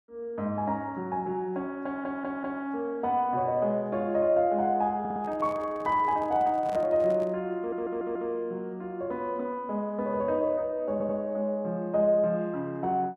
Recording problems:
stutter; 4 times, first at 2 s
microphone handling noise; from 5 to 7.5 s; peak -7 dB vs average level

